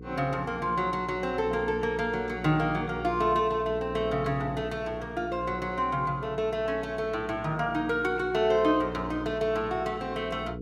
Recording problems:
electrical hum; 60 Hz, harmonics up to 480 Hz, SNR 12 dB

